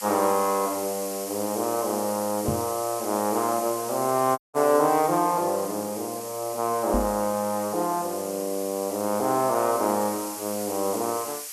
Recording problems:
hiss; SNR 9 dB
microphone bump; at 2.5 s and at 7 s; peak +2 dB vs average level
audio cutting out; at 4.5 s

